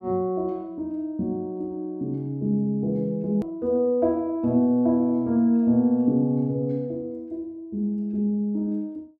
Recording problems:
click at an edit; at 3.5 s

